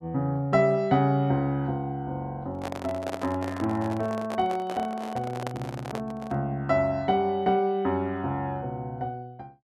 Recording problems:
microphone handling noise; from 2.5 to 6.5 s; peak -2 dB vs average level

